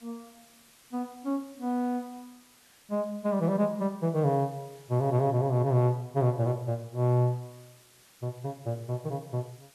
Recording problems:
background hiss; slope 0 dB per octave, SNR 27 dB

